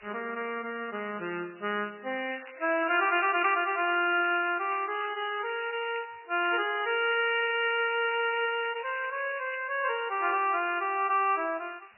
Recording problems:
lossy codec; MP3, log-spectral distance 15 dB, nothing above 2.4 kHz
background hiss; SNR 26 dB
crackling; from 2.5 to 6 s and from 6.5 to 9.5 s; loose cable, SNR 17 dB

